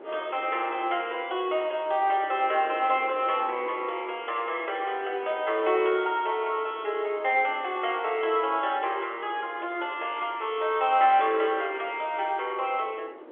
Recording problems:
telephone audio; 280 Hz to 3.4 kHz, G.711
wind on the microphone; below 670 Hz, SNR 20 dB

